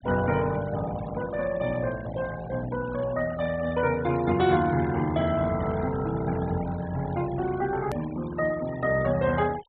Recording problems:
low-pass filter; nothing above 4 kHz
noise reduction artefacts; signal-to-artefact ratio 17 dB
edit click; at 8 s

